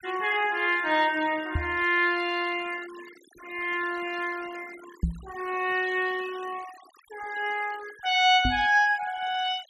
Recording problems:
denoising artefacts; signal-to-artefact ratio 20 dB
microphone thump; at 1.5 s, at 5 s and at 8.5 s; peak +2 dB vs average level

